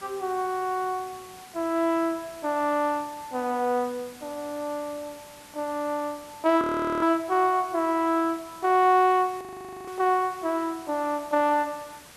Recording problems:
background hiss; slope -1 dB per octave, SNR 21 dB
audio freezing; at 6.5 s and at 9.5 s

